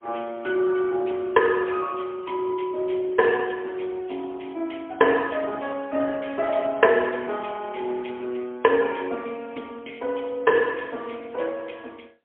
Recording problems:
phone line; 240 Hz to 3.3 kHz, AMR-NB, then MP3

